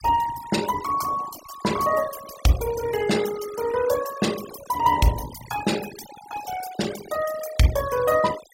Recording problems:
denoising artefacts; signal-to-artefact ratio 12 dB

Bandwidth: 16 kHz